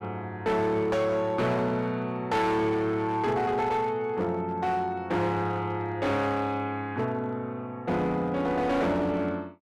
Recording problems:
distortion; hard clipping, signal-to-distortion ratio 10 dB

